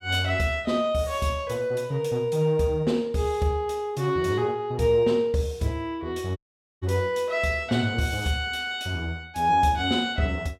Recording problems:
audio cutting out; at 6.5 s

